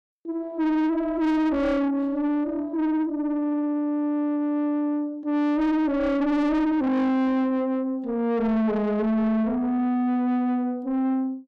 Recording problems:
distorted audio; soft clipping, signal-to-distortion ratio 8 dB

